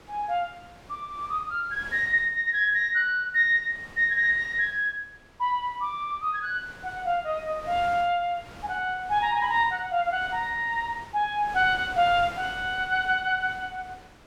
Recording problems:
wind on the microphone; below 2 kHz, SNR 21 dB

